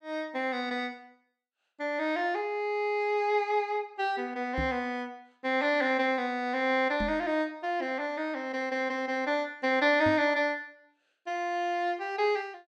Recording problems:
microphone bump; at 4.5 s, at 7 s and at 10 s; peak -2 dB vs average level

